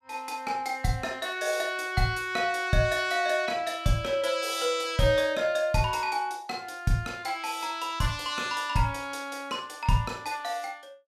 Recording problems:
none

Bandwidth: 15 kHz